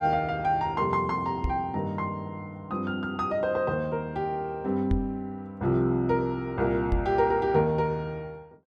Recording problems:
microphone thump; at 1.5 s, at 5 s and at 7 s; peak +3 dB vs average level

